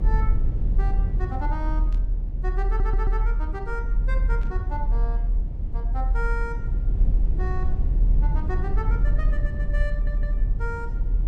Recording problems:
rumble; below 46 Hz, strongest tone 38 Hz, SNR -10 dB
burst of static; at 2 s and at 4.5 s; peak -11 dB vs average level
audio stuttering; at 2.5 s and at 10 s

